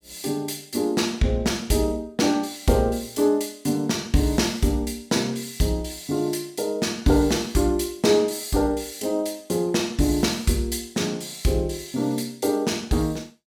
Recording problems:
none

